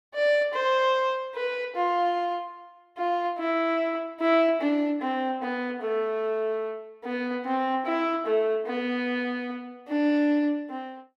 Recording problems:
none

